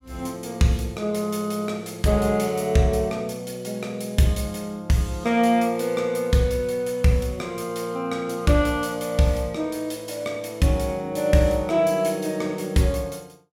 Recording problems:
none

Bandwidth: 16 kHz